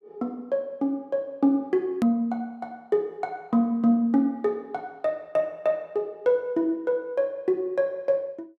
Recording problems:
click at an edit; at 2 s

